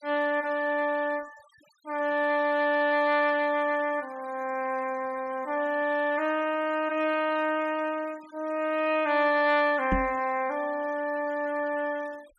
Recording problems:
denoising artefacts; signal-to-artefact ratio 24 dB
microphone thump; at 10 s; peak +3 dB vs average level

